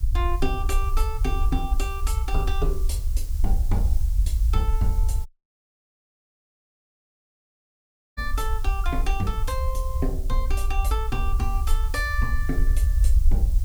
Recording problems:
background hiss; SNR 15 dB
low-frequency rumble; below 58 Hz, SNR -6 dB
dropout; at 5.5 s for 3 s

